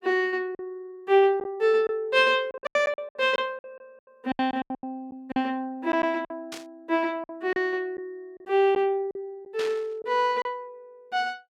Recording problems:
lost packets; 10% of the sound replaced, filled with silence
burst of static; at 6.5 s and at 9.5 s; peak -6 dB vs average level

